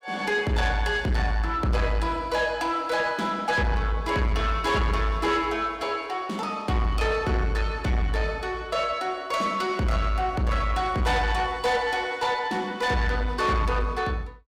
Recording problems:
distortion; soft clipping, signal-to-distortion ratio 10 dB

